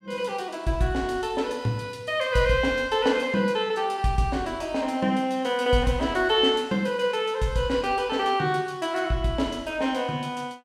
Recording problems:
none

